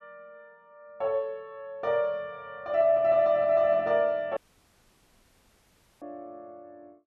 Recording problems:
dropout; at 4.5 s for 1.5 s

